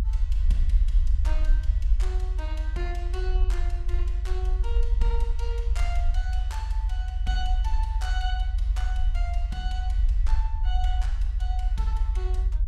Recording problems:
low-frequency rumble; below 50 Hz, SNR -12 dB

